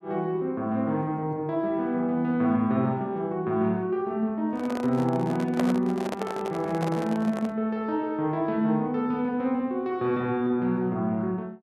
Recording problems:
handling noise; from 4.5 to 7.5 s; peak +1 dB vs average level

